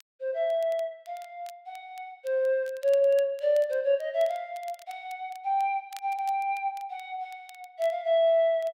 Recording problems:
crackle; vinyl, SNR 27 dB

